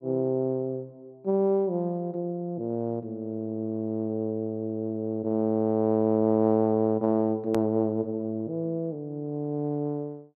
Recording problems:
click at an edit; at 7.5 s

